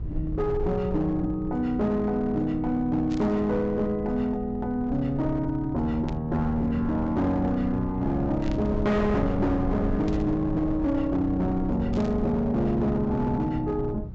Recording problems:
treble missing; nothing above 8 kHz
distortion; hard clipping, uneven, signal-to-distortion ratio 11 dB
electrical hum; 60 Hz, harmonics up to 420 Hz, SNR 15 dB
rumble; below 120 Hz, SNR 11 dB
static burst; 5 times, first at 3 s; peak -14 dB vs average level

